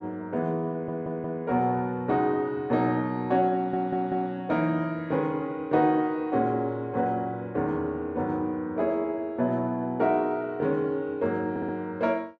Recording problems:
stutter; at 0.5 s, at 3.5 s and at 12 s

